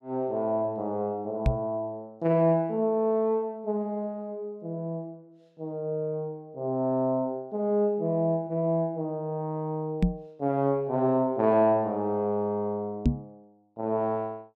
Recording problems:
knock on the microphone; at 1.5 s, at 10 s and at 13 s; peak +8 dB vs average level

